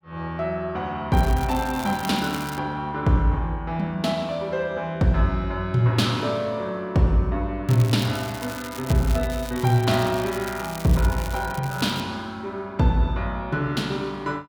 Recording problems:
crackling; from 1 to 2.5 s and from 7.5 to 12 s; loose cable, SNR 15 dB

